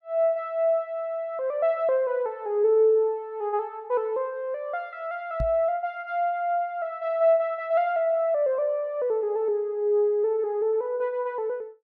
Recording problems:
microphone bump; at 5.5 s; peak -1 dB vs average level

